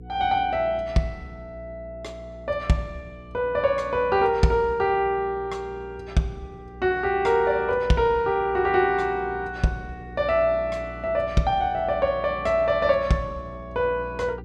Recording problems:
hum; 60 Hz, harmonics up to 480 Hz, SNR 18 dB

